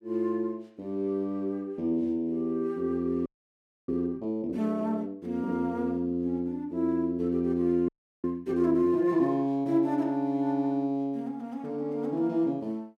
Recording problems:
frozen audio; at 3.5 s for 0.5 s and at 8 s

